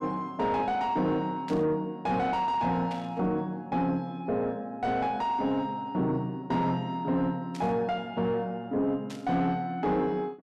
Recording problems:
distortion; soft clipping, signal-to-distortion ratio 11 dB
burst of static; 4 times, first at 1.5 s; peak -10 dB vs average level

